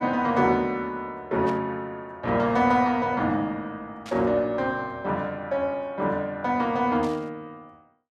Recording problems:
burst of static; at 1.5 s, at 4 s and at 7 s; peak -12 dB vs average level

